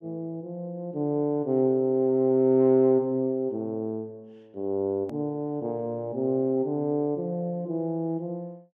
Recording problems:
hard cut with a click; at 5 s

